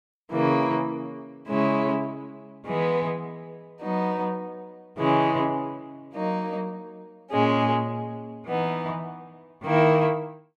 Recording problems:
none

